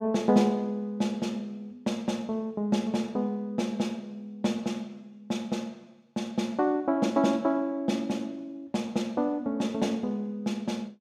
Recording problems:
none

